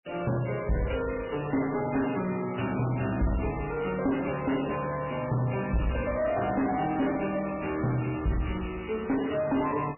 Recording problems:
lossy compression; MP3, log-spectral distance 8 dB, nothing above 2.9 kHz
distorted audio; soft clipping, signal-to-distortion ratio 6 dB

